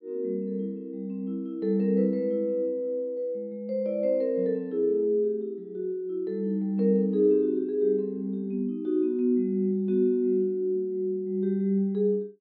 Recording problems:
low-pass filter; nothing above 5.4 kHz

